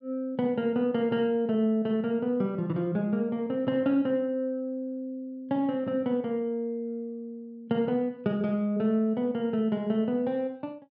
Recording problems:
treble cut off; nothing above 5.5 kHz

